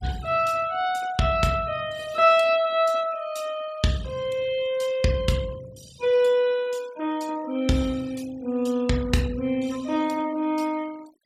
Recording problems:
denoising artefacts; signal-to-artefact ratio 22 dB

